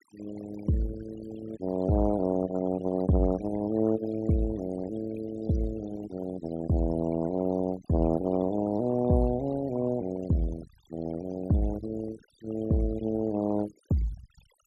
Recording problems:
noise reduction artefacts; signal-to-artefact ratio 16 dB

